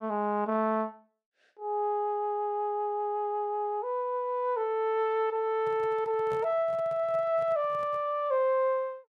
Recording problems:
handling noise; from 5.5 to 8 s; peak -10 dB vs average level

